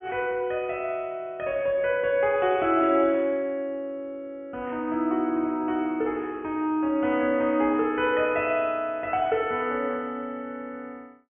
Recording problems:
low-pass filter; nothing above 3.2 kHz

